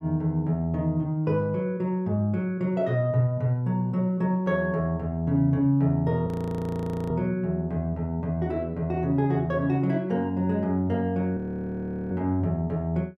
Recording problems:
frozen audio; at 6.5 s for 1 s and at 11 s for 0.5 s

